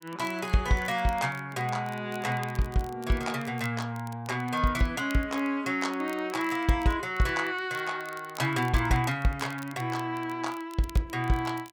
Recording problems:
crackling; vinyl, SNR 22 dB

